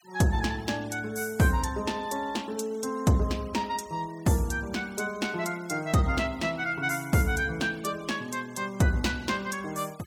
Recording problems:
denoising artefacts; signal-to-artefact ratio 22 dB

